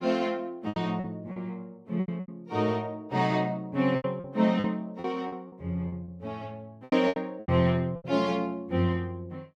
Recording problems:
packet loss; 11% of the sound replaced, filled with repeated pitch periods

